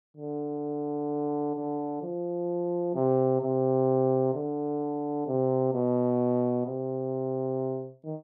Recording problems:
none

